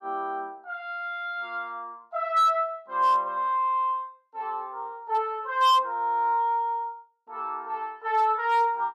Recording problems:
distorted audio; hard clipping, signal-to-distortion ratio 10 dB

